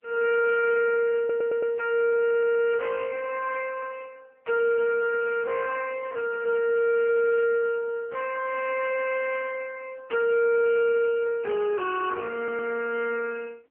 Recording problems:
phone line; 260 Hz to 2.8 kHz, AMR-NB
distorted audio; soft clipping, signal-to-distortion ratio 12 dB
stutter; at 1 s, at 2 s and at 12 s

